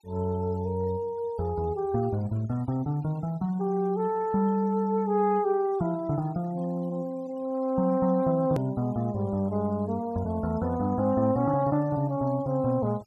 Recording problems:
denoising artefacts; signal-to-artefact ratio 26 dB
hard cut with a click; at 8.5 s

